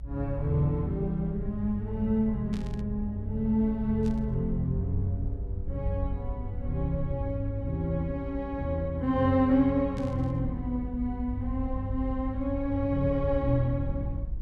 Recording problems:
low-frequency rumble; below 64 Hz, SNR 8 dB
static burst; at 2.5 s, at 4 s and at 10 s; peak -13 dB vs average level

